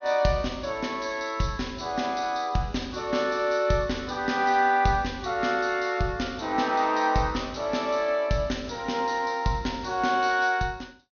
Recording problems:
treble missing; nothing above 6.5 kHz

